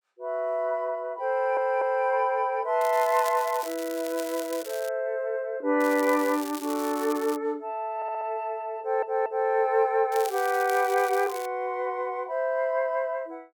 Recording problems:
stutter; at 1.5 s, at 8 s and at 9 s
crackling; from 3 to 5 s, from 6 to 7.5 s and from 10 to 11 s; loose cable, SNR 14 dB

